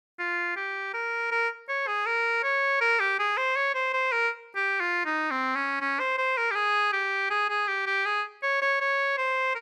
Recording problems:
none

